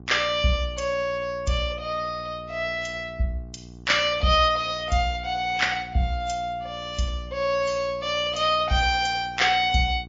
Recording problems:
codec artefacts; MP3, log-spectral distance 2 dB, nothing above 7.3 kHz
hum; 60 Hz, harmonics up to 1.1 kHz, SNR 20 dB

